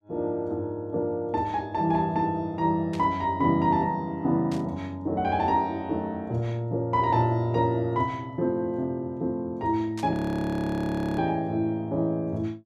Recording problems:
static burst; at 3 s, at 4.5 s and at 10 s; peak -10 dB vs average level
frozen audio; at 10 s for 1 s

